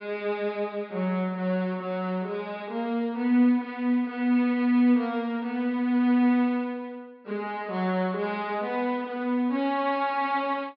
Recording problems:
low-pass filter; nothing above 5.5 kHz

